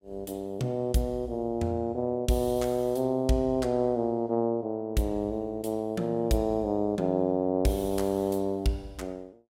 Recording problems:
none

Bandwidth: 16 kHz